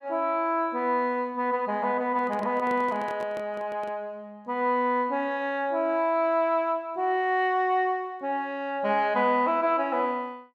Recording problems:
handling noise; from 2 to 4 s; peak -10 dB vs average level

